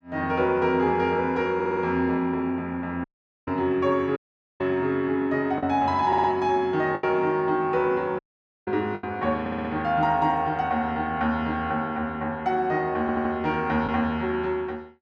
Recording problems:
packet loss; 1.6% of the sound replaced, filled with the last packet
audio stuttering; 4 times, first at 1.5 s
audio cutting out; at 3 s, at 4 s and at 8 s

